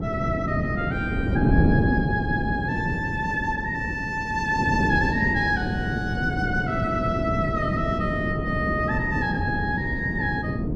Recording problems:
wind on the microphone; below 300 Hz, SNR 0 dB

